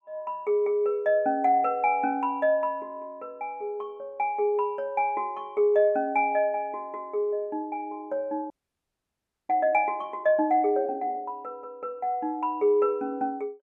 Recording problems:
audio freezing; at 8.5 s for 1 s

